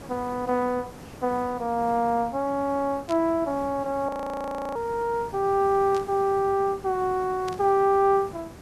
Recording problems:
background hiss; slope -6 dB per octave, SNR 18 dB
burst of static; at 3 s, at 6 s and at 7.5 s; peak -10 dB vs average level
audio freezing; at 4 s for 0.5 s

